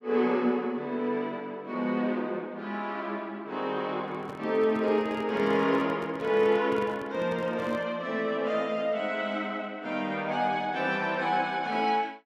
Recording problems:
microphone handling noise; from 4 to 8 s; peak -8 dB vs average level

